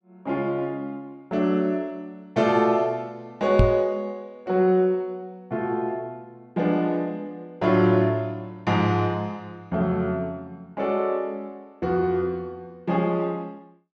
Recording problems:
microphone thump; at 3.5 s; peak +9 dB vs average level

